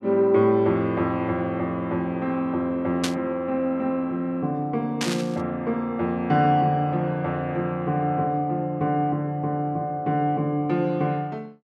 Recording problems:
burst of static; at 3 s and at 5 s; peak +1 dB vs average level

